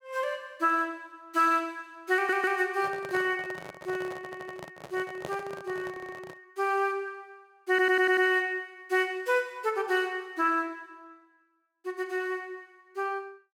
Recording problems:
stutter; 4 times, first at 2 s
handling noise; from 3 to 6.5 s; peak -5 dB vs average level

